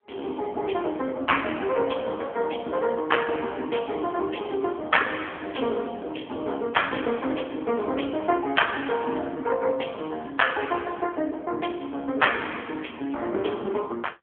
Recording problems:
phone line; 220 Hz to 3.3 kHz, AMR-NB

